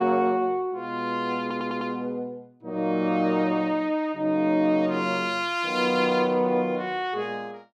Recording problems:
audio stuttering; at 1.5 s

